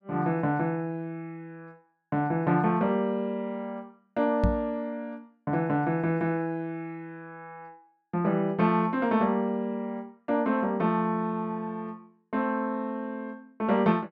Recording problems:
microphone bump; at 4.5 s; peak +6 dB vs average level

